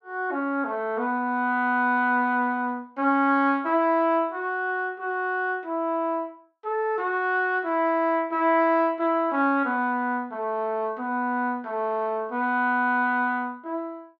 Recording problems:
none

